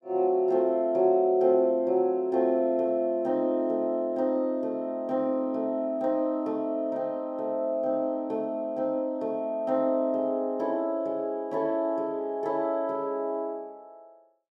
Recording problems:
none

